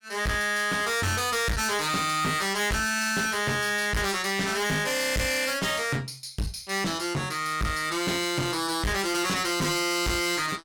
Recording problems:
distortion; hard clipping, uneven, signal-to-distortion ratio 5 dB

